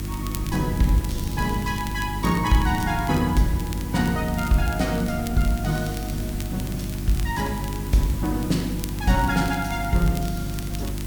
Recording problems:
hum; 50 Hz, harmonics up to 350 Hz, SNR 6 dB
hiss; slope -2 dB per octave, SNR 14 dB
wind noise; below 150 Hz, SNR 13 dB
crackle; vinyl, SNR 17 dB

